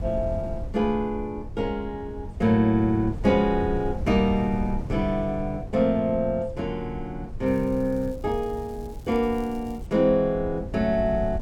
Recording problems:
wind noise; below 120 Hz, SNR 11 dB
crackling; from 7.5 to 10 s; loose cable, SNR 30 dB

